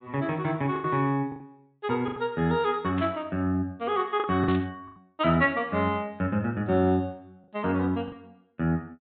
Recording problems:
treble missing; nothing above 4 kHz
packet loss; 6% of the sound replaced, filled with the last packet
burst of static; at 3 s and at 4.5 s; peak -9 dB vs average level

